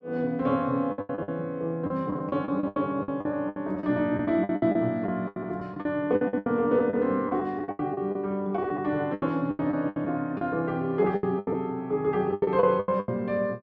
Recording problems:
lost packets; 17% of the sound replaced, filled with the last packet

